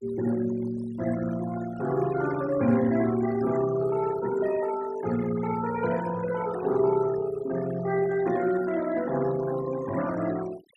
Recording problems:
noise reduction artefacts; signal-to-artefact ratio 14 dB

